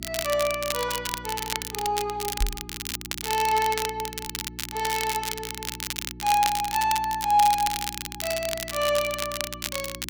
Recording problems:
mains hum; 60 Hz, harmonics up to 360 Hz, SNR 17 dB
crackling; vinyl, SNR 5 dB
microphone thump; at 2.5 s; peak +3 dB vs average level

